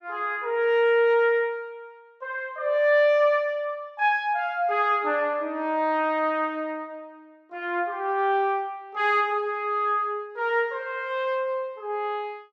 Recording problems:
none

